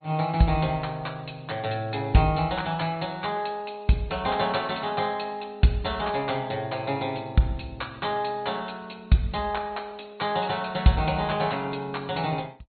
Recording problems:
treble cut off; nothing above 4.4 kHz
lossy compression; Opus, log-spectral distance 4 dB

